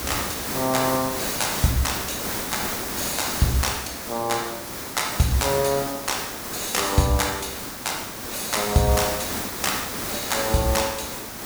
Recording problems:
hiss; slope -3 dB per octave, SNR 3 dB

